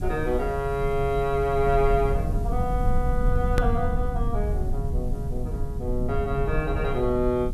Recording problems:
background hiss; slope 0 dB per octave, SNR 27 dB
rumble; below 86 Hz, SNR 2 dB
click at an edit; at 3.5 s

